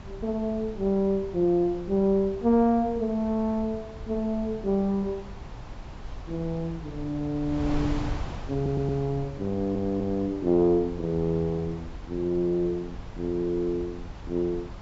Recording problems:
low-pass filter; nothing above 8 kHz
wind noise; below 210 Hz, SNR 13 dB
stutter; at 8.5 s and at 9.5 s

